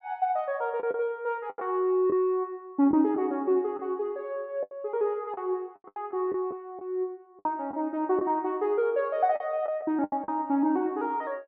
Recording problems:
lost packets; 7% of the sound replaced, filled with the last packet

